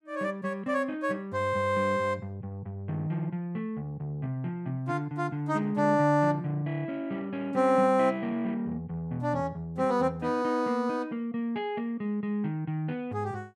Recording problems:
none

